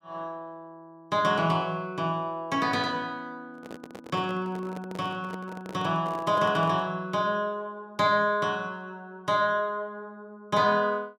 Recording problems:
microphone handling noise; from 3.5 to 7 s; peak -8 dB vs average level

